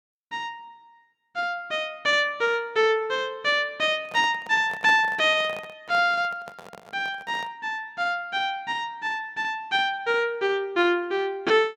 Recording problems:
microphone handling noise; from 4 to 7.5 s; peak -9 dB vs average level

